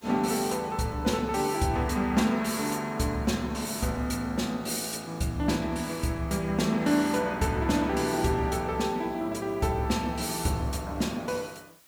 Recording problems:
hiss; slope -1 dB per octave, SNR 29 dB

